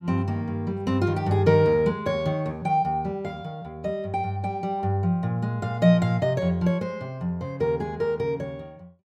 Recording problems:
none

